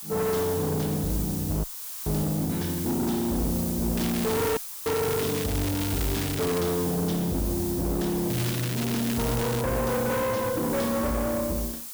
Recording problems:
distortion; hard clipping, uneven, signal-to-distortion ratio 7 dB
background hiss; SNR 6 dB
audio cutting out; at 1.5 s and at 4.5 s
crackling; from 4 to 6.5 s and from 8.5 to 9.5 s; loose cable, SNR 8 dB

